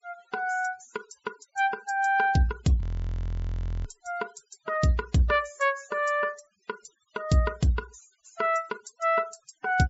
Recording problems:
treble cut off; nothing above 8 kHz
denoising artefacts; signal-to-artefact ratio 25 dB
audio freezing; at 3 s for 1 s

